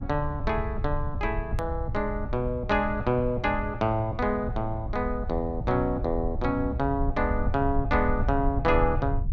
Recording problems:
rumble; below 80 Hz, SNR 6 dB
hard cut with a click; at 1.5 s

